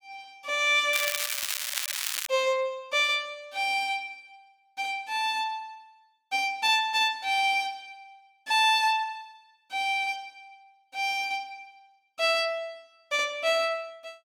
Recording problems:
crackle; from 1 to 2.5 s; loose cable, SNR 3 dB

